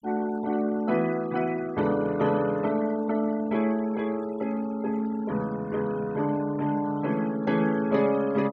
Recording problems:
denoising artefacts; signal-to-artefact ratio 20 dB

